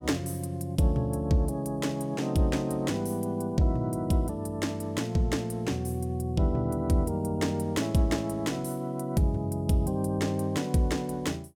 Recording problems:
none

